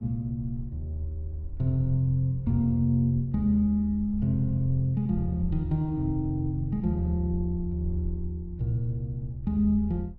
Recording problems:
rumble; below 54 Hz, SNR 15 dB

